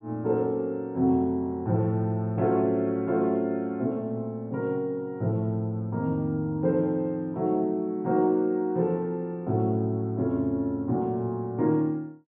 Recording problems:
treble missing; nothing above 4 kHz

